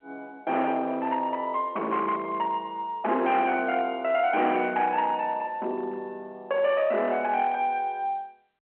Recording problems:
phone line; 280 Hz to 3.2 kHz, G.711
distortion; hard clipping, uneven, signal-to-distortion ratio 11 dB

